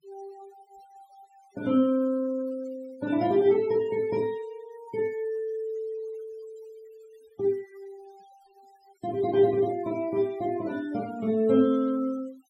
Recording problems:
denoising artefacts; signal-to-artefact ratio 24 dB

